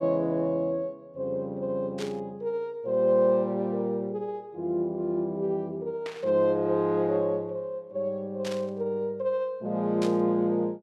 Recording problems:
burst of static; 4 times, first at 2 s; peak -6 dB vs average level

